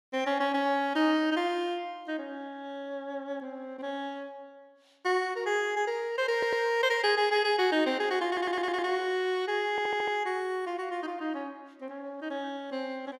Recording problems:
stutter; at 6.5 s, at 8.5 s and at 9.5 s

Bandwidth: 15.5 kHz